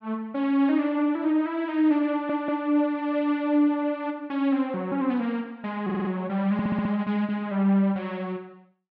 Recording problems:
stutter; at 2 s, at 6 s and at 6.5 s

